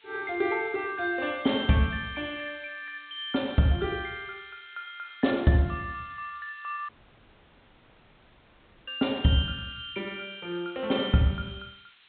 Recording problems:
low-pass filter; nothing above 4 kHz
hiss; SNR 27 dB
audio cutting out; at 7 s for 2 s

